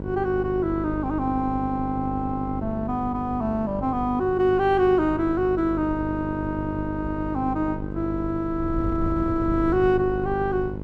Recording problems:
hum; 50 Hz, harmonics up to 1.1 kHz, SNR 8 dB
wind noise; below 110 Hz, SNR 14 dB

